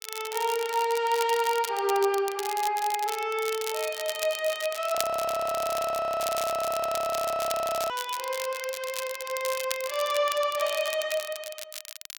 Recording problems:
crackle; vinyl, SNR 9 dB
audio freezing; at 5 s for 3 s

